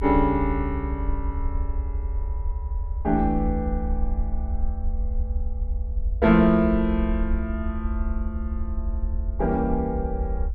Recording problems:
rumble; below 70 Hz, SNR 5 dB

